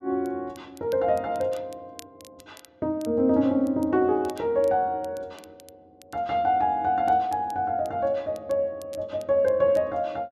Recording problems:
crackle; vinyl, SNR 27 dB

